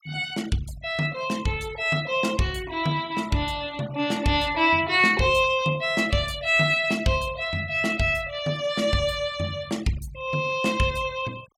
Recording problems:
noise reduction artefacts; signal-to-artefact ratio 21 dB

